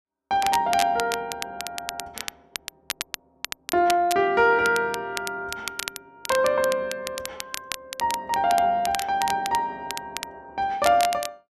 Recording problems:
crackle; vinyl, SNR 10 dB

